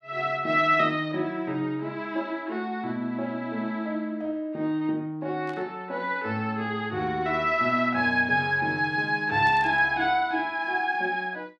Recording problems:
static burst; at 5.5 s and at 9.5 s; peak -16 dB vs average level

